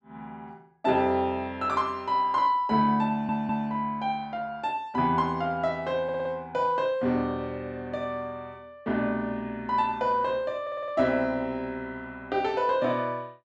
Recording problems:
stutter; at 3 s, at 6 s and at 11 s

